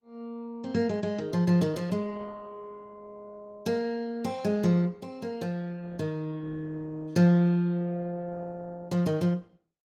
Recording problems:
codec artefacts; Opus, log-spectral distance 2 dB, nothing above 18 kHz

